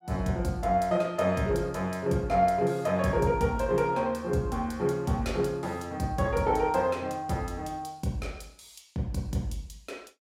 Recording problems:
none

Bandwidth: 16 kHz